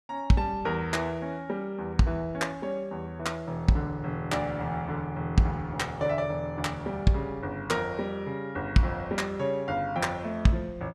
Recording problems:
none

